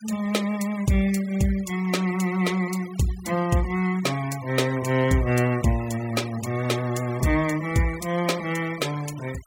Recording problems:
denoising artefacts; signal-to-artefact ratio 17 dB

